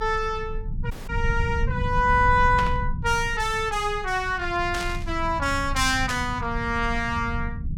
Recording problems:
rumble; below 110 Hz, strongest tone 26 Hz, SNR 7 dB
audio cutting out; at 1 s
static burst; at 2.5 s, at 4.5 s and at 6 s; peak -3 dB vs average level

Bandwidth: 17.5 kHz